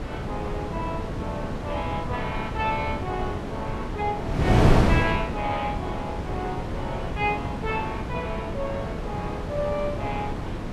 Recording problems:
wind noise; below 420 Hz, SNR -2 dB

